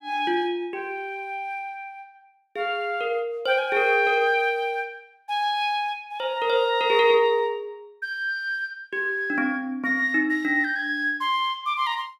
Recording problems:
none

